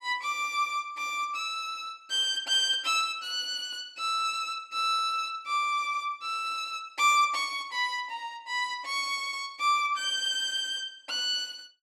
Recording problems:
none

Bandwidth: 14 kHz